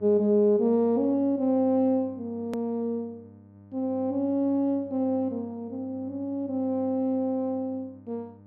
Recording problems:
mains hum; 50 Hz, harmonics up to 1.2 kHz, SNR 23 dB
edit click; at 2.5 s

